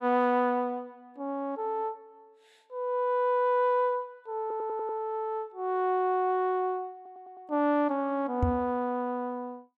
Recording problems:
audio stuttering; at 4.5 s and at 7 s
microphone bump; at 8.5 s; peak +5 dB vs average level

